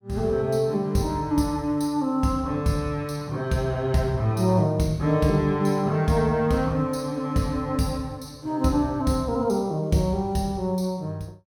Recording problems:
none

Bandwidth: 17 kHz